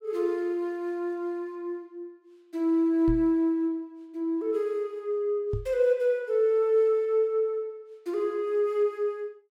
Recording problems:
knock on the microphone; at 3 s and at 5.5 s; peak -1 dB vs average level

